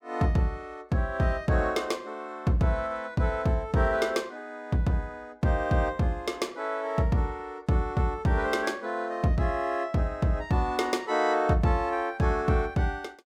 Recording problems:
none

